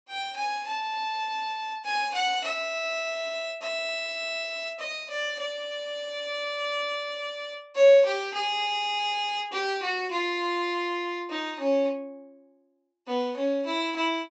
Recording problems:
low-pass filter; nothing above 8 kHz

